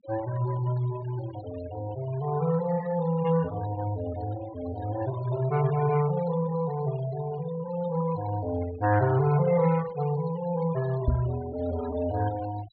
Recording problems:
treble cut off; nothing above 4.4 kHz
noise reduction artefacts; signal-to-artefact ratio 16 dB
knock on the microphone; at 11 s; peak +6 dB vs average level

